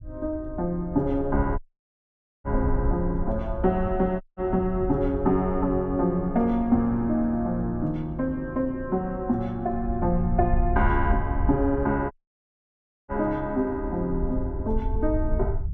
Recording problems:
rumble; below 78 Hz, SNR 7 dB
dropout; at 1.5 s for 1 s, at 4 s and at 12 s for 1 s

